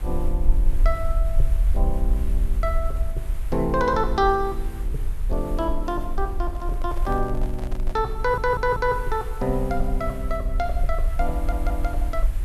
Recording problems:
background hiss; SNR 20 dB
rumble; below 48 Hz, SNR 1 dB
handling noise; from 6.5 to 8 s; peak -10 dB vs average level
audio stuttering; at 8 s and at 11 s

